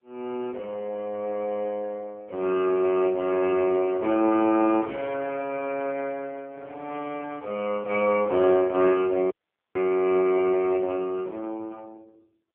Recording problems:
telephone audio; 240 Hz to 2.8 kHz, AMR-NB
dropout; at 9.5 s

